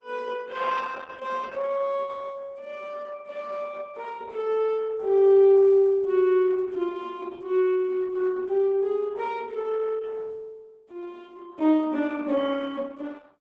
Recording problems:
lossy compression; Opus, log-spectral distance 3 dB

